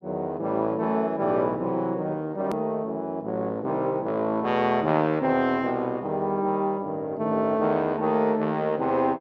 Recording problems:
edit click; at 2.5 s

